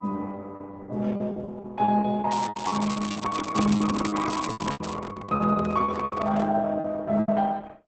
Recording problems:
codec artefacts; Opus, log-spectral distance 4 dB
packet loss; 16% of the sound replaced, filled with repeated pitch periods
crackle; from 2.5 to 5 s; loose cable, SNR 13 dB
handling noise; from 4.5 to 6.5 s; peak -6 dB vs average level

